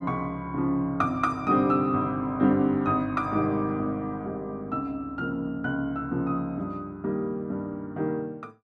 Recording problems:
none

